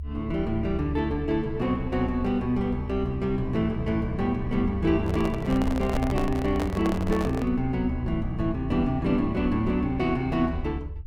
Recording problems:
rumble; below 74 Hz, SNR 9 dB
handling noise; from 5 to 7.5 s; peak -1 dB vs average level

